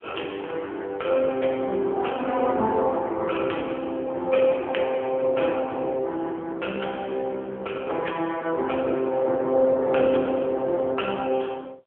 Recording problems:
phone line; 280 Hz to 3.4 kHz, AMR-NB

